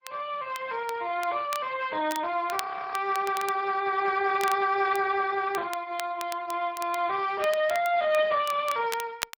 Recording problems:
codec artefacts; MP3, then Speex, log-spectral distance 4 dB
crackling; vinyl, SNR 15 dB
audio freezing; at 2.5 s

